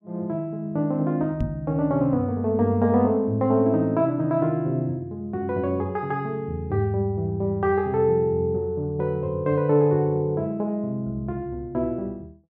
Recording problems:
knock on the microphone; at 1.5 s; peak +1 dB vs average level

